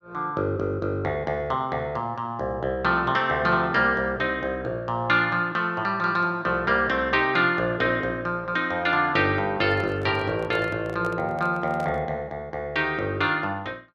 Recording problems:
microphone handling noise; from 9.5 to 12 s; peak -8 dB vs average level

